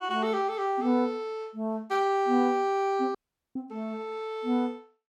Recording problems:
dropout; at 3 s

